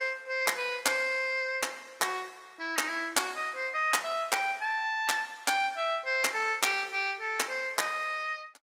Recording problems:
lossy codec; Opus, log-spectral distance 4 dB, nothing above 18.9 kHz

